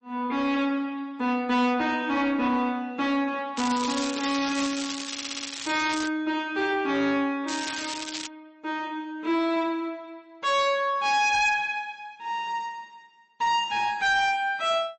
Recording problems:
lossy codec; MP3, log-spectral distance 4 dB, nothing above 7.6 kHz
distorted audio; soft clipping, signal-to-distortion ratio 10 dB
crackle; from 3.5 to 6 s and at 7.5 s; loose cable, SNR 7 dB
audio stuttering; at 5 s

